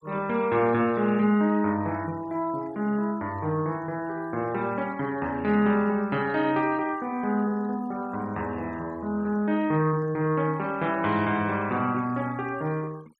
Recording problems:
denoising artefacts; signal-to-artefact ratio 25 dB

